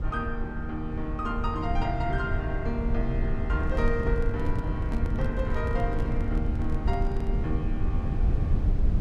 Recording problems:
low-frequency rumble; below 88 Hz, SNR -2 dB
microphone handling noise; from 3.5 to 7.5 s; peak -3 dB vs average level

